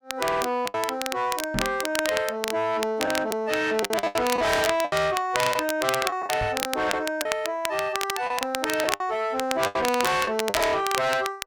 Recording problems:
distortion; soft clipping, signal-to-distortion ratio 6 dB
crackling; vinyl, SNR 6 dB
lost packets; 8% of the sound replaced, filled with the last packet
microphone bump; at 1.5 s and at 6.5 s; peak 0 dB vs average level

